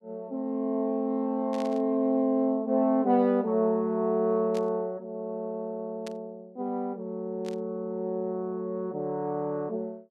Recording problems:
static burst; 4 times, first at 1.5 s; peak -10 dB vs average level

